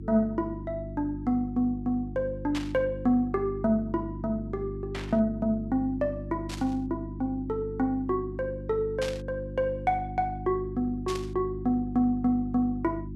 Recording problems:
hum; 50 Hz, harmonics up to 350 Hz, SNR 9 dB
burst of static; 5 times, first at 2.5 s; peak -3 dB vs average level

